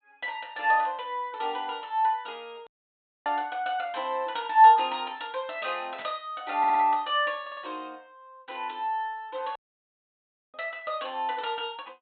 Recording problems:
treble missing; nothing above 4 kHz
audio cutting out; at 2.5 s for 0.5 s and at 9.5 s for 1 s
burst of static; at 6 s; peak -12 dB vs average level
stutter; at 6.5 s and at 7.5 s

